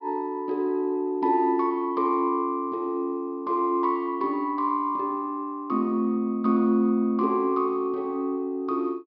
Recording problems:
treble missing; nothing above 5.5 kHz

